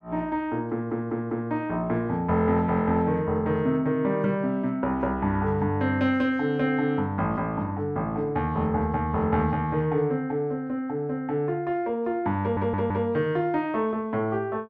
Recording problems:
stutter; at 0.5 s and at 12 s

